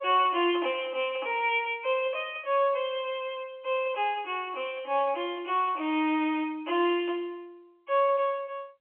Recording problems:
phone line; 260 Hz to 3.3 kHz, G.711

